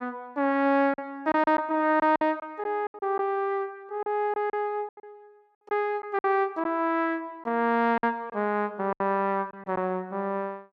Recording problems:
packet loss; 8% of the sound replaced, filled with silence

